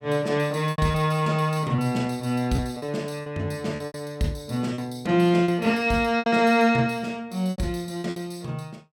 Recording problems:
lost packets; 8% of the sound replaced, filled with repeated pitch periods

